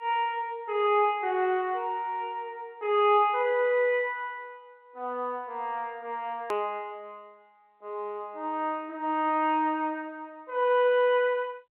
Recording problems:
telephone audio; 260 Hz to 3.4 kHz, G.711
click at an edit; at 6.5 s

